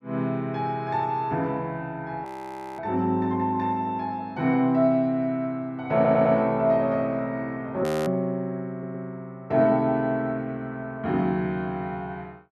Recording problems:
frozen audio; at 2.5 s for 0.5 s and at 8 s
audio stuttering; at 6 s and at 8.5 s

